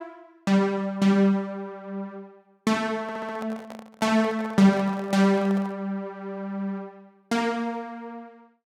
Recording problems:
handling noise; from 3 to 6 s; peak -11 dB vs average level
stutter; at 3 s

